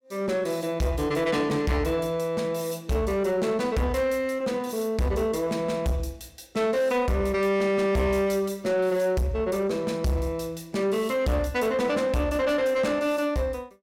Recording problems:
distortion; soft clipping, signal-to-distortion ratio 11 dB

